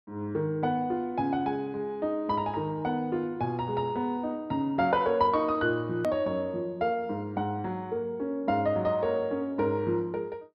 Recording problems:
treble missing; nothing above 5.5 kHz
hard cut with a click; at 6 s

